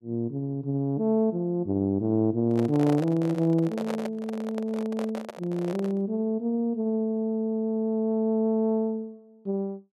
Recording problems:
microphone handling noise; from 2.5 to 6 s; peak -3 dB vs average level

